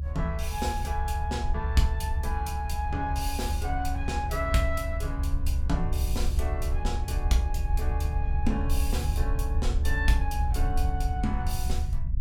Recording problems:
low-frequency rumble; below 72 Hz, SNR -2 dB

